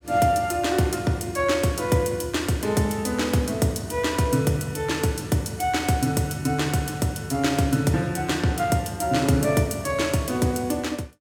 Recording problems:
none

